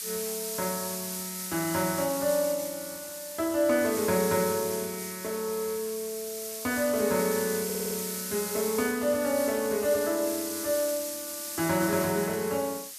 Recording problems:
background hiss; slope +4 dB per octave, SNR 5 dB
audio stuttering; at 7.5 s

